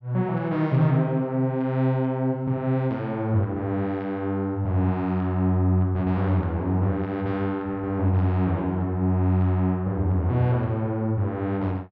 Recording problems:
none

